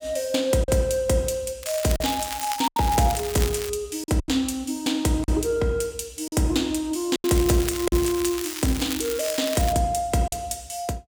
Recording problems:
lost packets; 5% of the sound replaced, filled with silence
crackling; from 1.5 to 3.5 s and from 7 to 9.5 s; loose cable, SNR 8 dB

